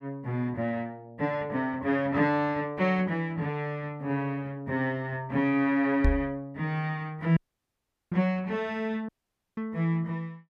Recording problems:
microphone thump; at 6 s; peak +7 dB vs average level
audio cutting out; at 7.5 s for 0.5 s and at 9 s

